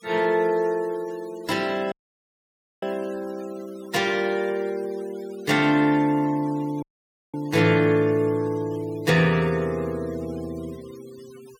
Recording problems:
denoising artefacts; signal-to-artefact ratio 23 dB
audio cutting out; at 2 s for 1 s and at 7 s for 0.5 s

